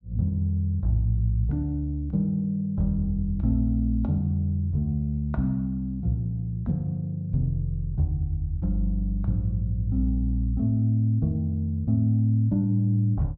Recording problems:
none

